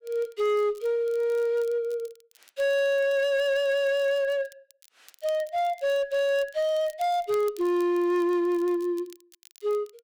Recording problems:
distortion; hard clipping, uneven, signal-to-distortion ratio 11 dB
crackling; vinyl, SNR 28 dB

